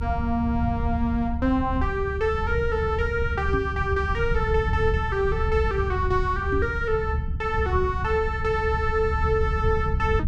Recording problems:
rumble; below 100 Hz, SNR 4 dB
microphone bump; at 3.5 s and at 6.5 s; peak 0 dB vs average level

